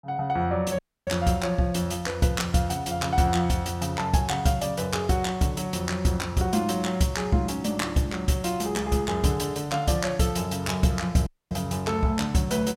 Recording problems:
audio cutting out; at 1 s and at 11 s

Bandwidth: 16.5 kHz